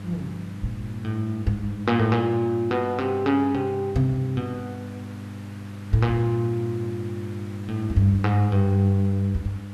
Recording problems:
hum; 50 Hz, harmonics up to 500 Hz, SNR 12 dB
background hiss; SNR 24 dB

